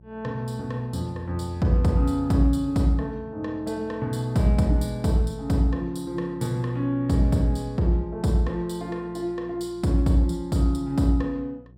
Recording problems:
electrical hum; 60 Hz, harmonics up to 540 Hz, SNR 24 dB

